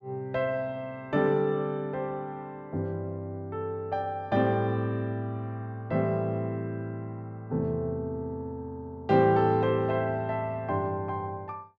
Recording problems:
none

